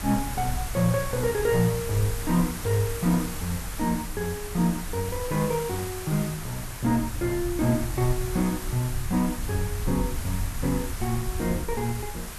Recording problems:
background hiss; slope -2 dB per octave, SNR 9 dB
rumble; below 82 Hz, SNR 10 dB

